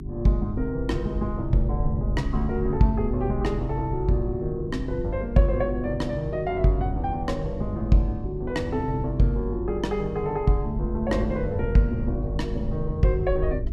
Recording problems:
electrical hum; 50 Hz, harmonics up to 400 Hz, SNR 12 dB
low-frequency rumble; below 70 Hz, SNR 7 dB

